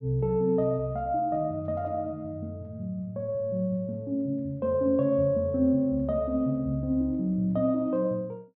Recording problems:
none

